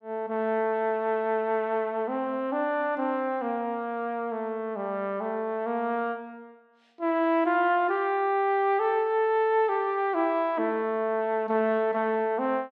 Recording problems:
none

